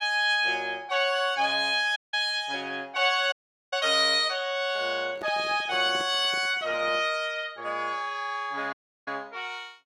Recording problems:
dropout; at 2 s, at 3.5 s and at 8.5 s
handling noise; from 5 to 7 s; peak -11 dB vs average level

